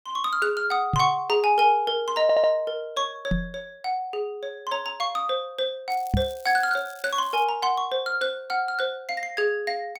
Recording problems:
microphone thump; at 1 s, at 3.5 s and at 6 s; peak +4 dB vs average level
stutter; at 2 s
crackle; from 6 to 7.5 s; loose cable, SNR 23 dB

